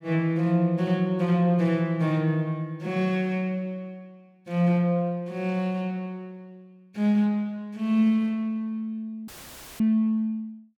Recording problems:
dropout; at 9.5 s for 0.5 s; filled with static

